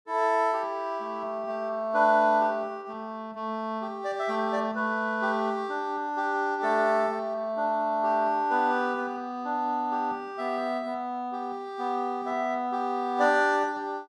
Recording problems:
none

